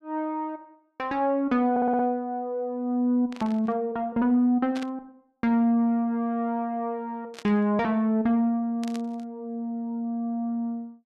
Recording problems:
stutter; at 1.5 s
static burst; 4 times, first at 3.5 s; peak -9 dB vs average level

